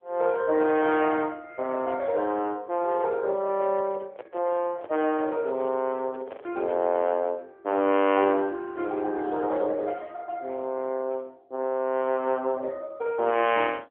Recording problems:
telephone audio; 220 Hz to 3.3 kHz, AMR-NB
handling noise; from 3.5 to 7 s; peak -9 dB vs average level

